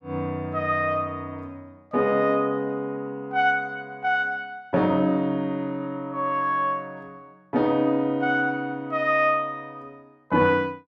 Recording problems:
none

